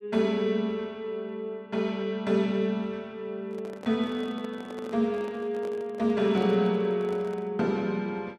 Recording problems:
handling noise; from 3.5 to 7.5 s; peak -10 dB vs average level

